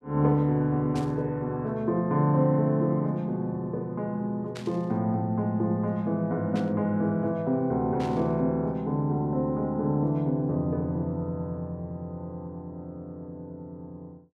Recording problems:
burst of static; 4 times, first at 1 s; peak -10 dB vs average level

